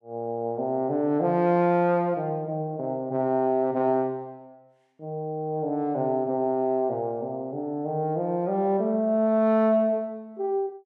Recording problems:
none

